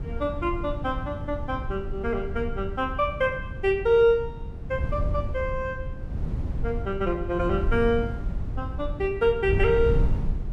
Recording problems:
wind on the microphone; below 110 Hz, SNR 6 dB

